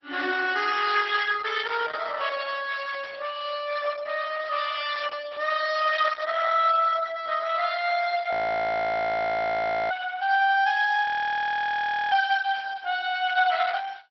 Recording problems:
treble cut off; nothing above 5.7 kHz
lossy compression; Opus, log-spectral distance 5 dB
frozen audio; at 8.5 s for 1.5 s and at 11 s for 1 s

